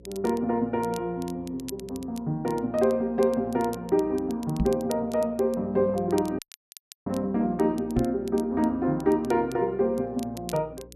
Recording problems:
electrical hum; 60 Hz, harmonics up to 540 Hz, SNR 24 dB
crackle; vinyl, SNR 21 dB
knock on the microphone; at 4.5 s and at 8 s; peak +3 dB vs average level
audio cutting out; at 6.5 s for 0.5 s

